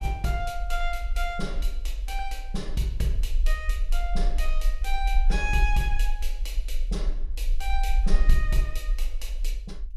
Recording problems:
low-frequency rumble; below 38 Hz, strongest tone 22 Hz, SNR -2 dB

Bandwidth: 14.5 kHz